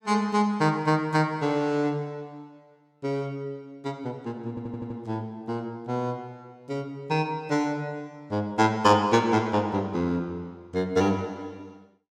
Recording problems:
stutter; at 4.5 s

